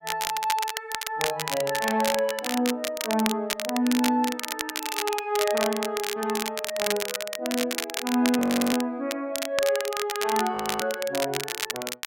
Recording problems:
crackle; vinyl, SNR 4 dB
frozen audio; at 8.5 s and at 11 s

